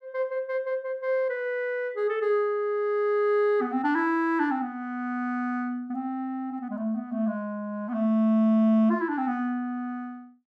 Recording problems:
none

